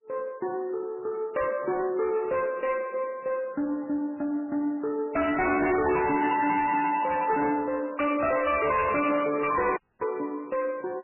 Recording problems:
codec artefacts; MP3, log-spectral distance 3 dB, nothing above 2.4 kHz
distorted audio; soft clipping, signal-to-distortion ratio 7 dB
dropout; at 10 s

